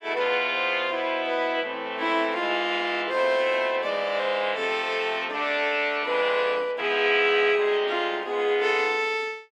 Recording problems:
none

